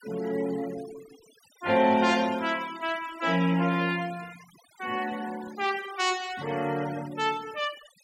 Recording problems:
noise reduction artefacts; signal-to-artefact ratio 17 dB

